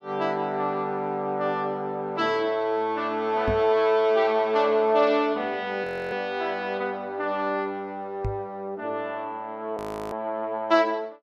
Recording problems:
knock on the microphone; at 3.5 s and at 8.5 s; peak 0 dB vs average level
audio freezing; at 6 s and at 10 s

